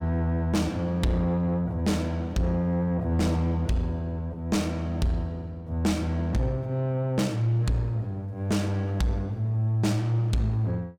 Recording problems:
distortion; soft clipping, signal-to-distortion ratio 11 dB

